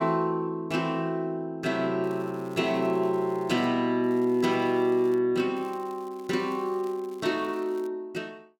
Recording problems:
crackling; from 2 to 3.5 s, from 4 to 5 s and from 5.5 to 8 s; loose cable, SNR 29 dB

